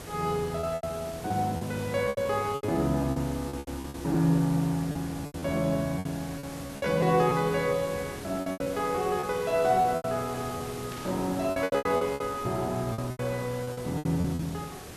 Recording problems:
background hiss; slope -4 dB per octave, SNR 13 dB
lost packets; 14% of the sound replaced, filled with repeated pitch periods
burst of static; at 11 s; peak -11 dB vs average level

